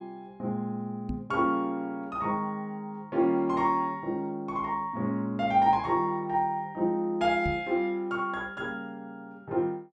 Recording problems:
knock on the microphone; at 1 s and at 7.5 s; peak -1 dB vs average level

